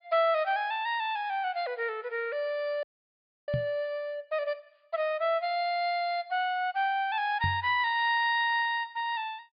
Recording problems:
low-pass filter; nothing above 5 kHz
audio freezing; at 3 s for 0.5 s
knock on the microphone; at 3.5 s and at 7.5 s; peak +1 dB vs average level

